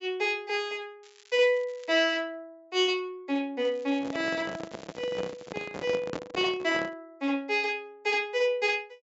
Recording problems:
treble missing; nothing above 8 kHz
crackle; from 1 to 2 s and from 3.5 to 5.5 s; loose cable, SNR 27 dB
microphone handling noise; from 4 to 7 s; peak -2 dB vs average level

